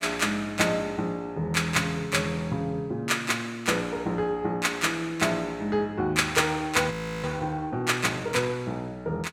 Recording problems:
frozen audio; at 7 s

